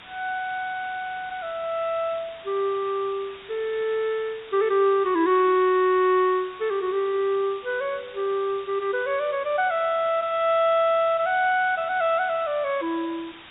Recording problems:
treble cut off; nothing above 4 kHz
background hiss; SNR 20 dB

